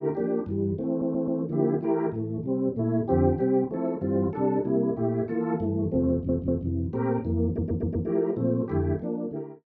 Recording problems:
stutter; at 1 s, at 6 s and at 7.5 s

